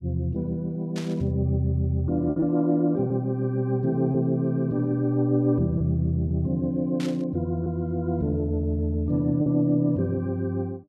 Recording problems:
lost packets; 2% of the sound replaced, filled with repeated pitch periods
burst of static; at 1 s and at 7 s; peak -9 dB vs average level

